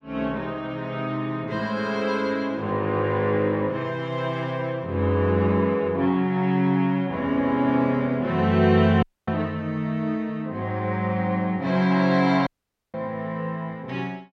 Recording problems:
audio cutting out; at 9 s and at 12 s

